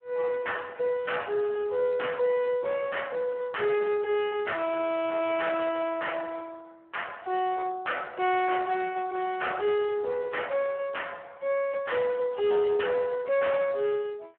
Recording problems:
phone line; 300 Hz to 3.2 kHz, Speex
distortion; soft clipping, signal-to-distortion ratio 12 dB

